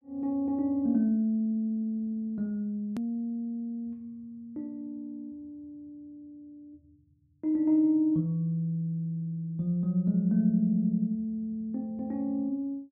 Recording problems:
edit click; at 3 s

